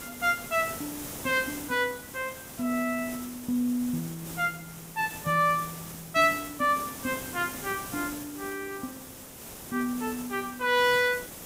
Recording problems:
hiss; SNR 11 dB

